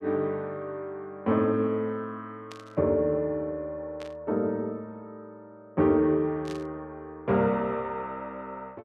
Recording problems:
burst of static; at 2.5 s, at 4 s and at 6.5 s; peak -11 dB vs average level

